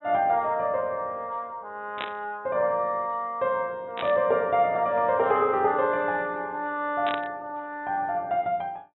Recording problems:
treble cut off; nothing above 3.8 kHz
static burst; at 2 s, at 4 s and at 7 s; peak -2 dB vs average level

